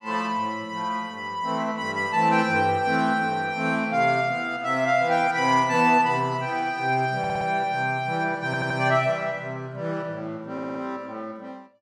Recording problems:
stutter; at 7 s, at 8.5 s and at 11 s

